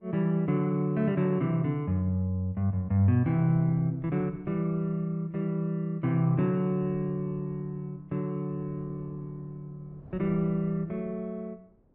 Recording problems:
wind noise; below 360 Hz, SNR 24 dB

